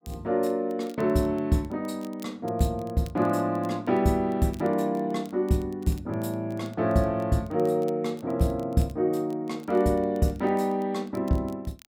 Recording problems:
crackle; vinyl, SNR 29 dB

